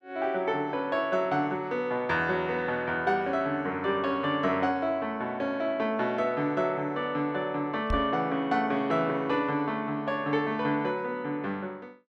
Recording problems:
microphone thump; at 8 s; peak 0 dB vs average level

